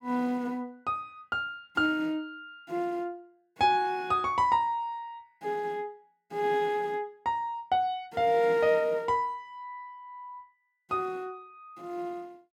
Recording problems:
none

